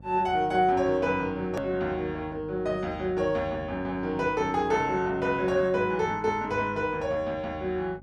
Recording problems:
hum; 50 Hz, harmonics up to 800 Hz, SNR 19 dB
hard cut with a click; at 1.5 s

